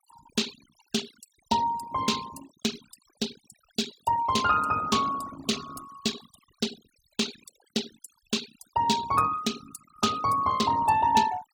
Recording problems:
denoising artefacts; signal-to-artefact ratio 14 dB

